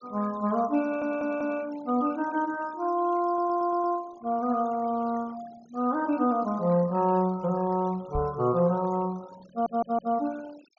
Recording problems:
treble cut off; nothing above 6.8 kHz
denoising artefacts; signal-to-artefact ratio 22 dB
stutter; at 1 s, at 3.5 s and at 9.5 s
microphone thump; at 8 s; peak -3 dB vs average level

